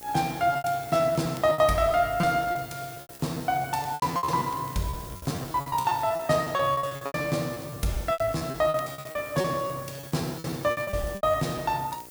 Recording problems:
mains hum; 60 Hz, harmonics up to 2.1 kHz, SNR 24 dB
background hiss; slope 0 dB per octave, SNR 17 dB
crackling; vinyl, SNR 28 dB
lost packets; 19% of the sound replaced, filled with repeated pitch periods

